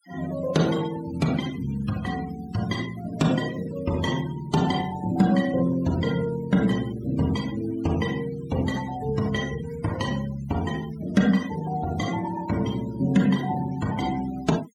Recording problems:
noise reduction artefacts; signal-to-artefact ratio 17 dB

